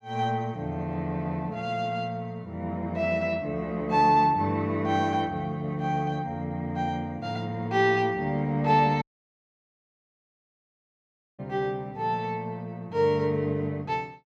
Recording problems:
audio cutting out; at 9 s for 2.5 s

